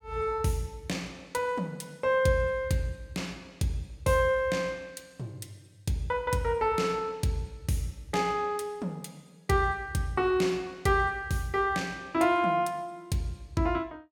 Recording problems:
none

